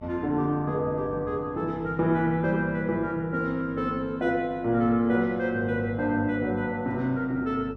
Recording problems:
hum; 50 Hz, harmonics up to 800 Hz, SNR 20 dB

